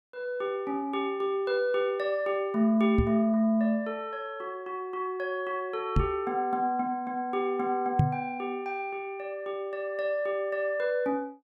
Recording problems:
knock on the microphone; at 3 s, at 6 s and at 8 s; peak +9 dB vs average level

